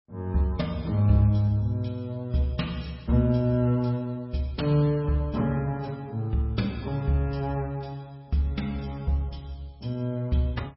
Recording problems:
lossy codec; MP3, log-spectral distance 3 dB, nothing above 5.5 kHz

